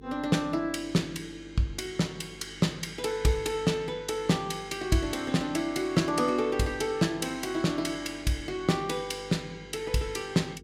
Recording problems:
hum; 50 Hz, harmonics up to 450 Hz, SNR 21 dB

